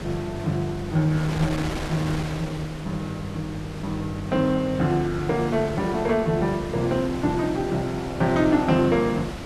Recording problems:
hum; 50 Hz, harmonics up to 400 Hz, SNR 20 dB
wind on the microphone; below 1.5 kHz, SNR 10 dB

